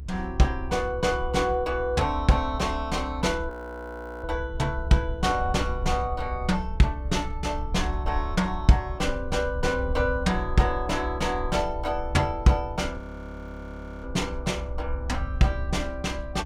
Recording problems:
low-frequency rumble; below 66 Hz, SNR 8 dB
audio freezing; at 3.5 s for 0.5 s and at 13 s for 1 s

